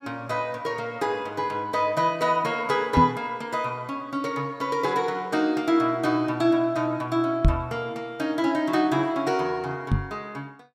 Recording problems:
microphone bump; at 3 s, at 7.5 s and at 10 s; peak +8 dB vs average level

